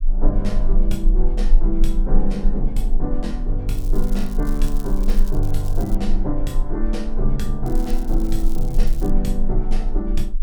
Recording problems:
rumble; below 30 Hz, strongest tone 18 Hz, SNR -2 dB
crackle; from 3.5 to 6 s and from 7.5 to 9 s; loose cable, SNR 17 dB

